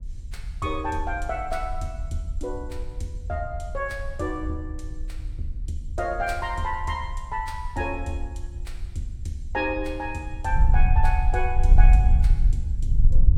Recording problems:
wind noise; below 60 Hz, SNR -3 dB

